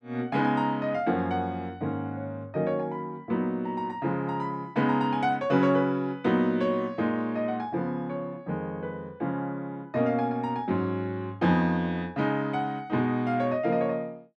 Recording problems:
none

